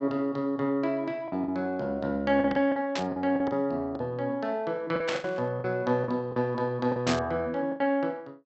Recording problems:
low-pass filter; nothing above 7.9 kHz
packet loss; 9% of the sound replaced, filled with the last packet
static burst; at 3 s, at 5 s and at 7 s; peak +1 dB vs average level

